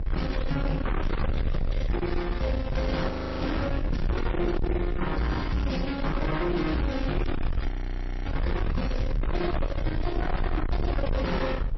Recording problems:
lossy compression; MP3, then MP3, log-spectral distance 2 dB, nothing above 5.7 kHz
distortion; soft clipping, signal-to-distortion ratio 5 dB
hum; 60 Hz, harmonics up to 720 Hz, SNR 18 dB
low-frequency rumble; below 100 Hz, SNR 2 dB
wind on the microphone; below 530 Hz, SNR 12 dB
frozen audio; at 3 s and at 7.5 s for 0.5 s

